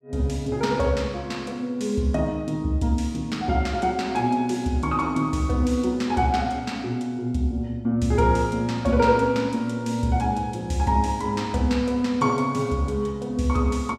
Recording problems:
none

